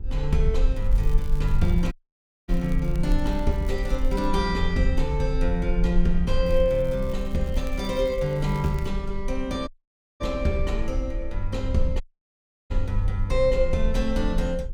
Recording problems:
hum; 60 Hz, harmonics up to 960 Hz, SNR 24 dB
rumble; below 44 Hz, SNR 3 dB
crackling; from 1 to 4.5 s and from 6.5 to 9 s; loose cable, SNR 24 dB
dropout; at 2 s for 0.5 s, at 9.5 s for 0.5 s and at 12 s for 0.5 s

